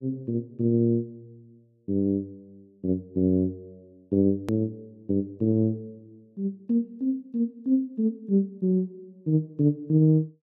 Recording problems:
edit click; at 4.5 s

